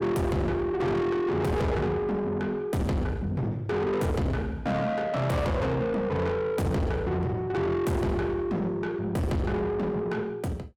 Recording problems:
distorted audio; soft clipping, signal-to-distortion ratio 6 dB

